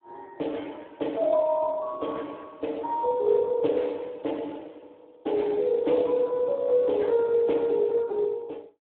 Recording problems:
telephone audio; 280 Hz to 3.7 kHz, Speex

